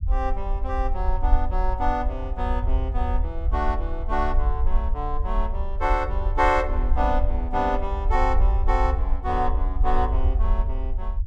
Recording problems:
low-frequency rumble; below 58 Hz, SNR -1 dB

